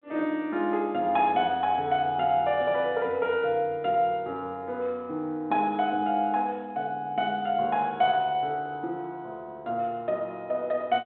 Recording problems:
phone line; 260 Hz to 3.7 kHz, G.726

